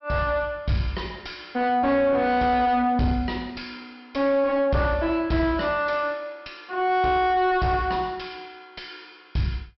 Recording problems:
low-pass filter; nothing above 5.6 kHz
distortion; soft clipping, signal-to-distortion ratio 6 dB

